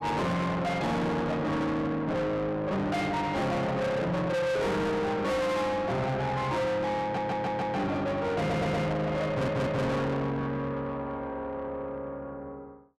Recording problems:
distortion; soft clipping, signal-to-distortion ratio 6 dB
stutter; at 7 s, at 8.5 s and at 9.5 s

